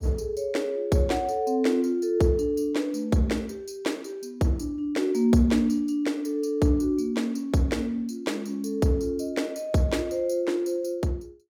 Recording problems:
none

